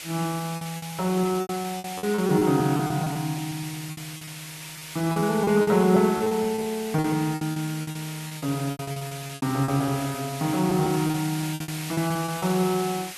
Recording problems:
background hiss; SNR 11 dB
lost packets; 17% of the sound replaced, filled with repeated pitch periods

